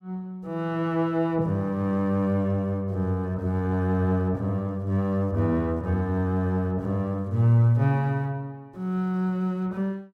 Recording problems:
none

